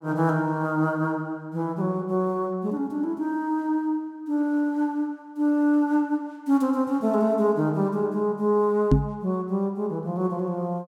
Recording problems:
knock on the microphone; at 9 s; peak +9 dB vs average level

